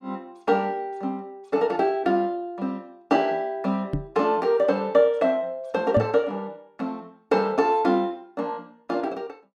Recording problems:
knock on the microphone; at 4 s and at 6 s; peak +4 dB vs average level

